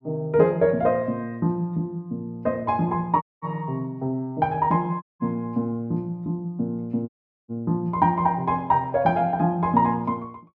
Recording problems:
dropout; at 3 s, at 5 s and at 7 s

